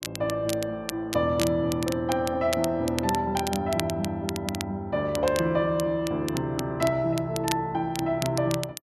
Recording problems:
crackling; vinyl, SNR 10 dB

